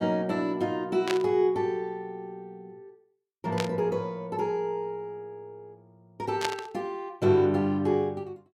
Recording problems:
static burst; at 1 s, at 3.5 s and at 6.5 s; peak +2 dB vs average level

